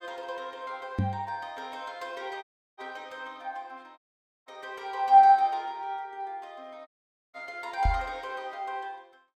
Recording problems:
knock on the microphone; at 1 s and at 8 s; peak +4 dB vs average level
dropout; at 2.5 s, at 4 s and at 7 s

